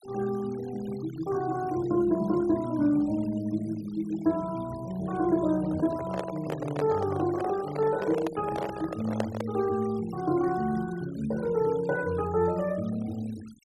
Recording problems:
noise reduction artefacts; signal-to-artefact ratio 20 dB
microphone handling noise; from 5.5 to 9.5 s; peak +3 dB vs average level

